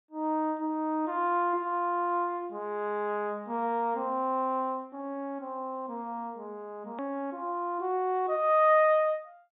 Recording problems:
treble missing; nothing above 4 kHz
edit click; at 7 s

